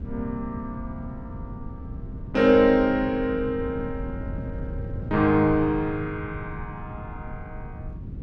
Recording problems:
wind noise; below 160 Hz, SNR 13 dB

